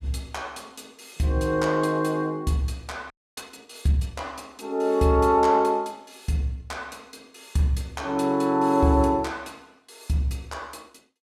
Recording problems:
audio freezing; at 3 s

